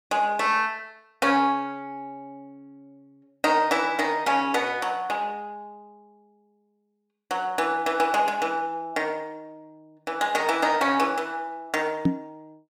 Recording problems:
microphone thump; at 12 s; peak +7 dB vs average level

